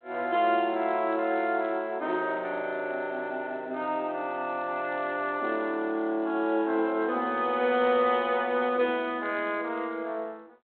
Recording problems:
phone line; 190 Hz to 3.9 kHz, G.726

